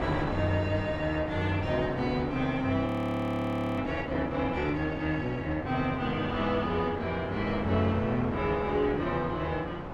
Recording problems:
wind noise; below 930 Hz, SNR 8 dB
audio freezing; at 3 s for 1 s

